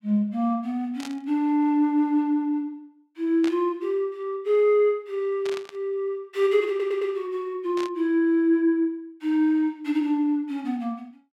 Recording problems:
burst of static; 4 times, first at 1 s; peak -9 dB vs average level
audio stuttering; at 6.5 s

